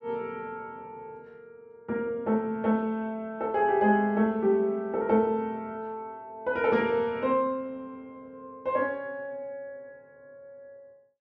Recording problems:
none

